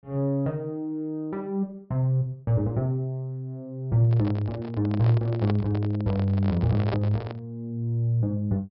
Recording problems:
treble missing; nothing above 5.4 kHz
microphone handling noise; from 4 to 7.5 s; peak -1 dB vs average level

